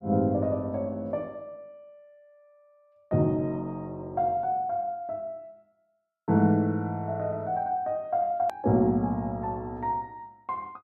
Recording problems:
hard cut with a click; at 8.5 s

